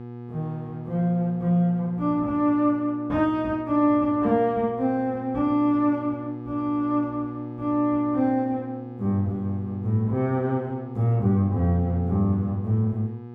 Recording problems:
hum; 60 Hz, harmonics up to 1.2 kHz, SNR 14 dB

